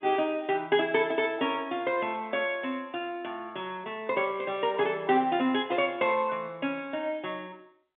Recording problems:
phone line; 150 Hz to 3.6 kHz, G.711

